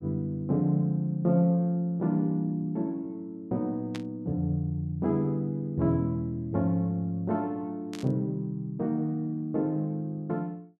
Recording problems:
burst of static; at 4 s and at 8 s; peak -8 dB vs average level

